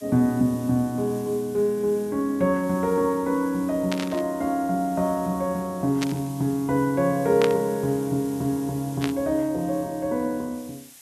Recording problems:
background hiss; slope +2 dB per octave, SNR 21 dB
static burst; 4 times, first at 4 s; peak 0 dB vs average level

